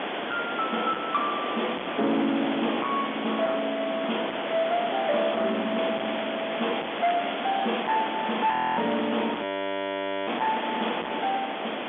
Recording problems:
phone line; 190 Hz to 3.5 kHz, G.711
distorted audio; hard clipping, signal-to-distortion ratio 9 dB
background hiss; SNR 4 dB
crackle; from 6 to 7.5 s; loose cable, SNR 13 dB
audio freezing; at 8.5 s and at 9.5 s for 1 s

